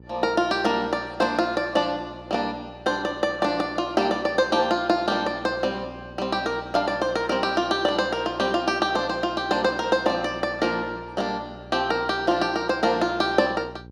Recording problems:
hum; 60 Hz, harmonics up to 900 Hz, SNR 21 dB

